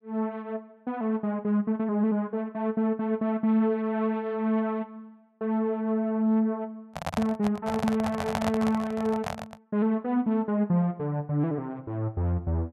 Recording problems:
handling noise; from 7 to 9.5 s; peak +3 dB vs average level

